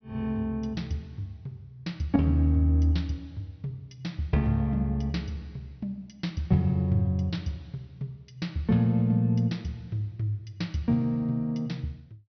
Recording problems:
treble missing; nothing above 6.1 kHz

